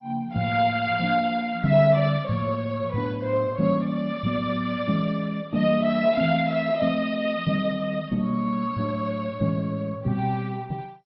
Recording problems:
lossy compression; MP2, log-spectral distance 3 dB, nothing above 4.9 kHz

